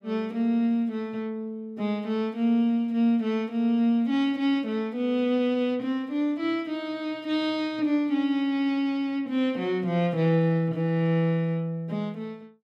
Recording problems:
none

